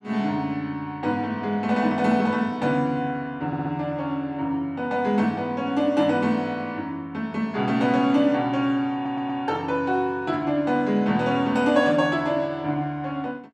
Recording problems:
stutter; at 3.5 s and at 9 s

